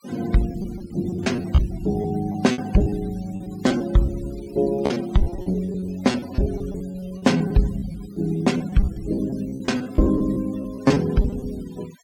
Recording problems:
denoising artefacts; signal-to-artefact ratio 19 dB
lost packets; 15% of the sound replaced, filled with repeated pitch periods

